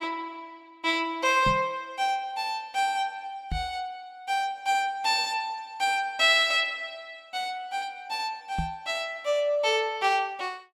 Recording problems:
microphone bump; at 1.5 s, at 3.5 s and at 8.5 s; peak -1 dB vs average level

